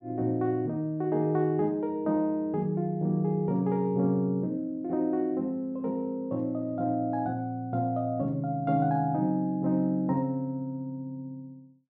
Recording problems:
none

